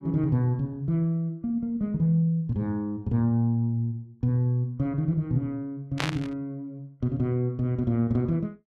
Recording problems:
burst of static; at 6 s; peak +2 dB vs average level

